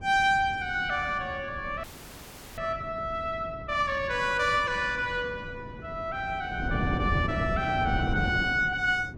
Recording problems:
wind on the microphone; below 270 Hz, SNR 8 dB
frozen audio; at 2 s for 0.5 s

